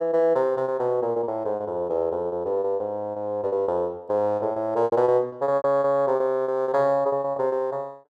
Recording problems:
lost packets; 14% of the sound replaced, filled with repeated pitch periods

